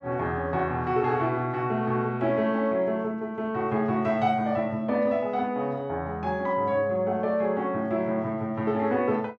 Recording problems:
none

